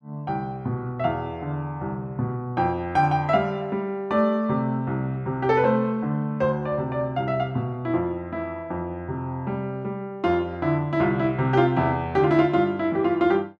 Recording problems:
none

